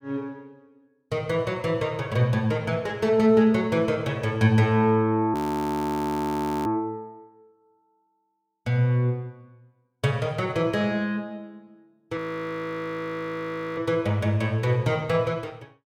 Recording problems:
frozen audio; at 5.5 s for 1.5 s and at 12 s for 1.5 s

